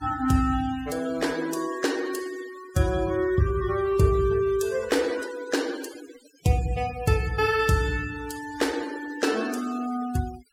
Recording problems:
denoising artefacts; signal-to-artefact ratio 16 dB

